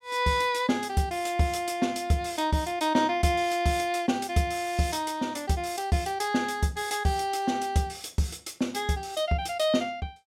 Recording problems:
none

